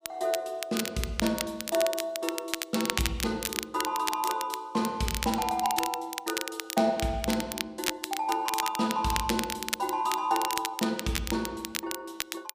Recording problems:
crackle; vinyl, SNR 4 dB

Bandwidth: 15 kHz